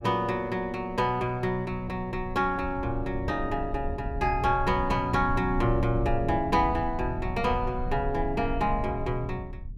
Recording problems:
rumble; below 84 Hz, SNR 9 dB

